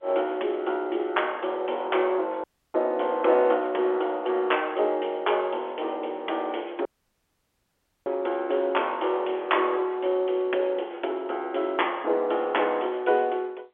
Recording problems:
telephone audio; 300 Hz to 3.5 kHz, G.711
audio cutting out; at 2.5 s and at 7 s for 1 s

